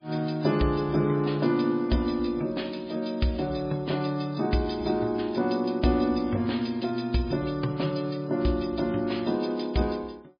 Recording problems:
codec artefacts; MP3, log-spectral distance 5 dB, nothing above 5 kHz

